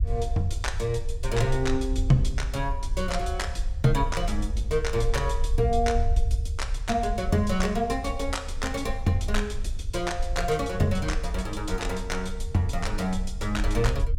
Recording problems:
low-frequency rumble; below 62 Hz, SNR 4 dB

